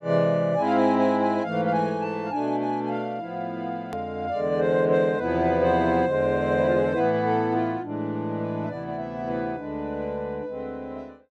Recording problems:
edit click; at 4 s

